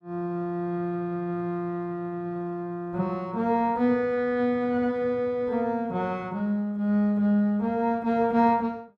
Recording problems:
none

